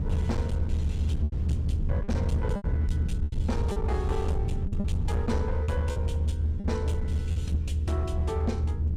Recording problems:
distortion; hard clipping, signal-to-distortion ratio 10 dB
electrical hum; 60 Hz, harmonics up to 480 Hz, SNR 5 dB
rumble; below 92 Hz, strongest tone 78 Hz, SNR -5 dB
wind noise; below 150 Hz, SNR 16 dB
lost packets; 6% of the sound replaced, filled with repeated pitch periods

